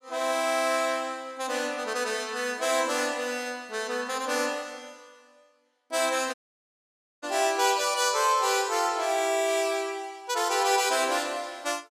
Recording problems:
dropout; at 6.5 s for 1 s

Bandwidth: 14.5 kHz